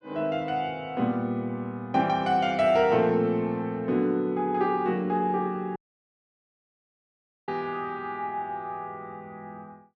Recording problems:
audio cutting out; at 6 s for 1.5 s

